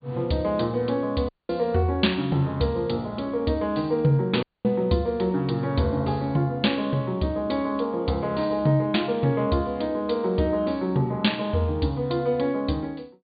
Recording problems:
low-pass filter; nothing above 4.6 kHz
dropout; at 1.5 s and at 4.5 s

